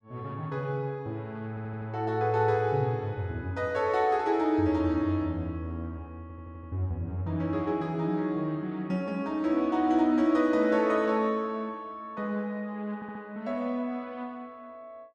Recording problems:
audio stuttering; at 1.5 s, at 6 s and at 13 s

